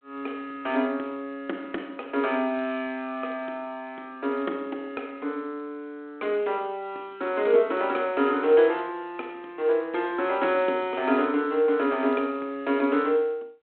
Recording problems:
phone line; 220 Hz to 3.8 kHz, G.726

